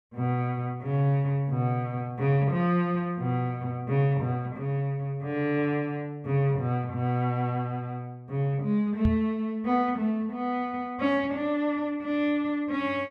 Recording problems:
microphone thump; at 9 s; peak +5 dB vs average level

